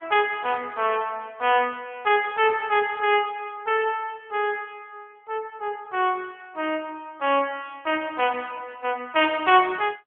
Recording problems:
phone line; 280 Hz to 3.4 kHz, AMR-NB

